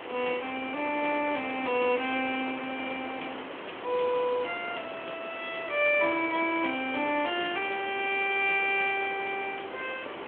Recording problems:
phone line; 260 Hz to 3.3 kHz, Speex
background hiss; SNR 10 dB

